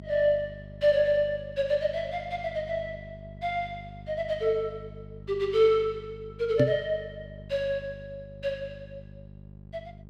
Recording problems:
hum; 50 Hz, harmonics up to 600 Hz, SNR 17 dB
microphone bump; at 6.5 s; peak +6 dB vs average level

